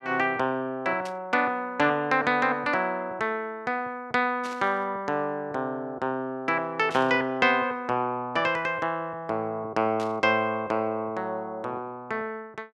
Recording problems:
static burst; 4 times, first at 1 s; peak -9 dB vs average level

